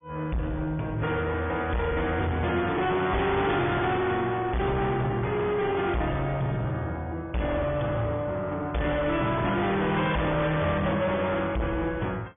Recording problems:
treble cut off; nothing above 3.5 kHz
lossy compression; AAC, log-spectral distance 2 dB
distortion; soft clipping, signal-to-distortion ratio 7 dB

